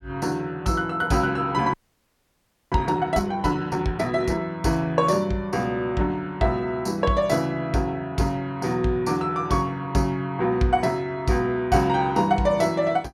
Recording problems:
audio freezing; at 1.5 s for 1 s

